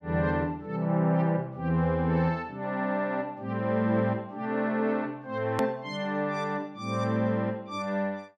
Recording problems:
hard cut with a click; at 5.5 s

